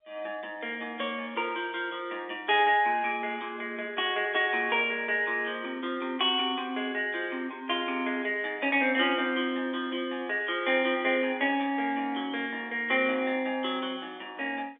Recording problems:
phone line; 240 Hz to 3.6 kHz, G.711

